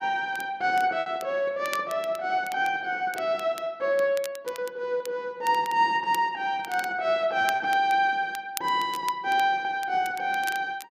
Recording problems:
crackling; vinyl, SNR 18 dB
packet loss; 2% of the sound replaced, filled with repeated pitch periods

